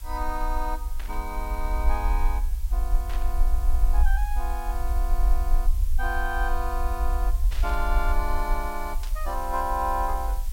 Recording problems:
background hiss; slope +2 dB per octave, SNR 15 dB
low-frequency rumble; below 48 Hz, strongest tone 20 Hz, SNR -3 dB
burst of static; 4 times, first at 1 s; peak -6 dB vs average level

